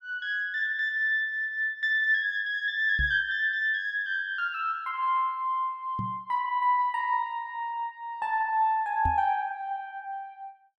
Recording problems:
microphone bump; at 3 s, at 6 s and at 9 s; peak -1 dB vs average level

